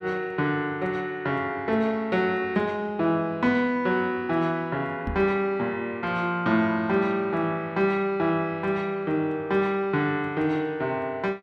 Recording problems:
microphone bump; at 5 s; peak -3 dB vs average level

